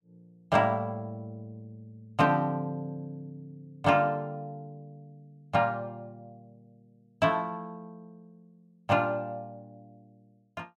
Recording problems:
none

